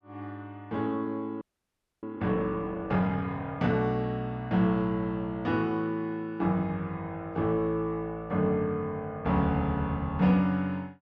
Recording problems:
audio freezing; at 1.5 s for 0.5 s

